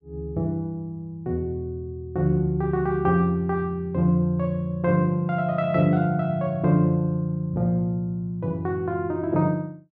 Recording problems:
treble missing; nothing above 7.6 kHz

